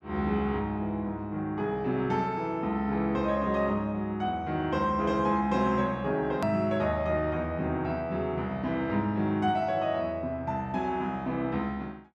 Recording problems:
edit click; at 6.5 s

